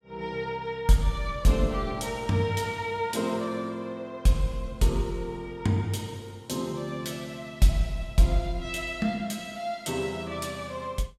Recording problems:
none

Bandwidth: 17 kHz